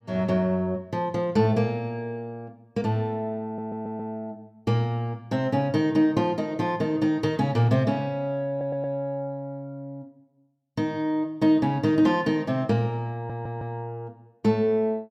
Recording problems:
audio stuttering; at 3.5 s, at 8.5 s and at 13 s

